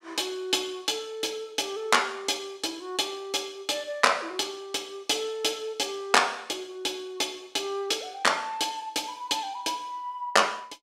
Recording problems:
none

